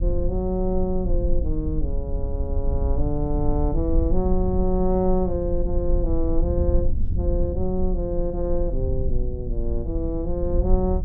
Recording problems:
rumble; below 62 Hz, strongest tone 22 Hz, SNR 1 dB

